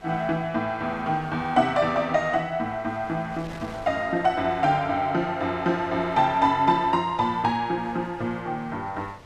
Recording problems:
wind noise; below 1.6 kHz, SNR 21 dB

